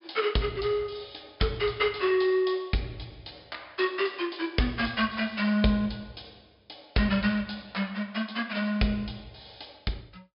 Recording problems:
treble cut off; nothing above 5.5 kHz

